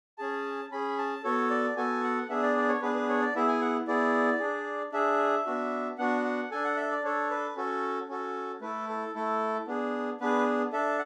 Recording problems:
none

